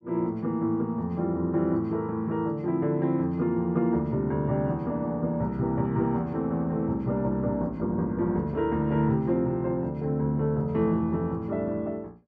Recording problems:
none

